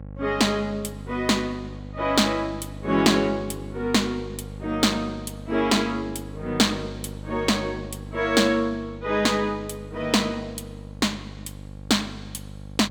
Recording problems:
mains hum; 50 Hz, harmonics up to 850 Hz, SNR 14 dB

